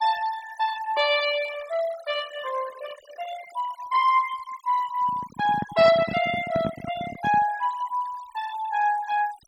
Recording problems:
denoising artefacts; signal-to-artefact ratio 15 dB
microphone handling noise; from 5 to 7.5 s; peak -1 dB vs average level

